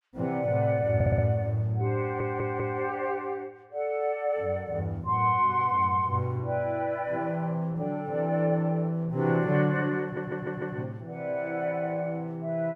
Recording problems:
audio stuttering; at 1 s, at 2 s and at 10 s

